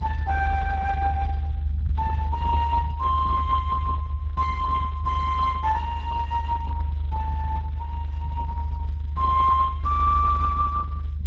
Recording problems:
codec artefacts; Speex, log-spectral distance 2 dB
low-frequency rumble; below 80 Hz, strongest tone 74 Hz, SNR 3 dB

